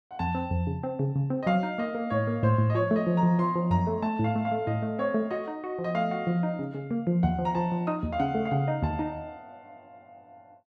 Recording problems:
none

